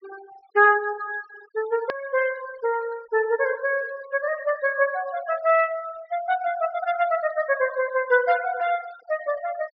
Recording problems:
treble missing; nothing above 5.5 kHz
denoising artefacts; signal-to-artefact ratio 18 dB
hard cut with a click; at 2 s

